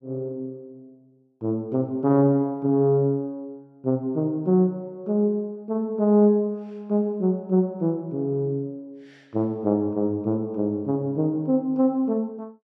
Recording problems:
none

